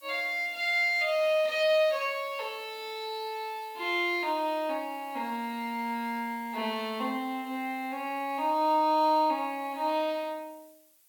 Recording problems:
background hiss; slope +2 dB per octave, SNR 25 dB

